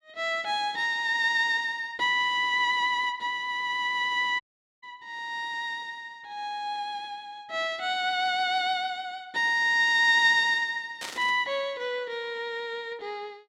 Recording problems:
audio cutting out; at 4.5 s
static burst; at 11 s; peak -6 dB vs average level

